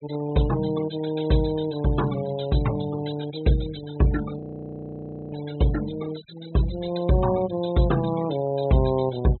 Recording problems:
treble cut off; nothing above 4 kHz
noise reduction artefacts; signal-to-artefact ratio 16 dB
frozen audio; at 4.5 s for 1 s

